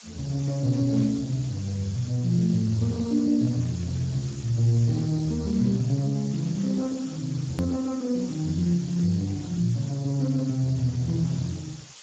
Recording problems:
lossy codec; AAC, then Speex, log-spectral distance 10 dB, nothing above 13.1 kHz
background hiss; slope +2 dB per octave, SNR 18 dB
edit click; at 7.5 s

